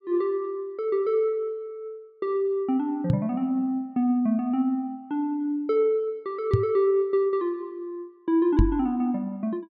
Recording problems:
microphone bump; at 3 s, at 6.5 s and at 8.5 s; peak +8 dB vs average level

